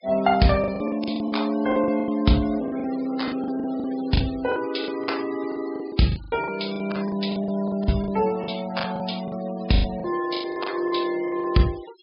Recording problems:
low-pass filter; nothing above 5.5 kHz
denoising artefacts; signal-to-artefact ratio 18 dB
lost packets; 16% of the sound replaced, filled with the last packet

